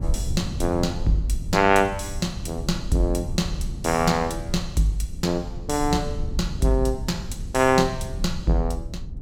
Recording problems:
rumble; below 100 Hz, SNR 9 dB

